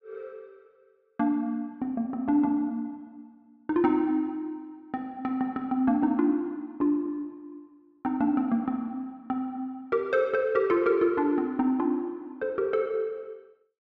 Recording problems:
none

